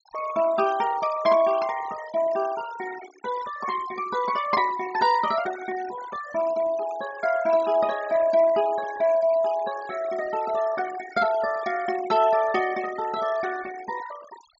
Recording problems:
treble cut off; nothing above 8 kHz
noise reduction artefacts; signal-to-artefact ratio 15 dB

